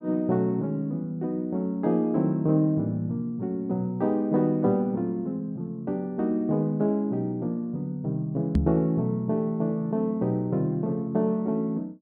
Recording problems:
knock on the microphone; at 8.5 s; peak +5 dB vs average level

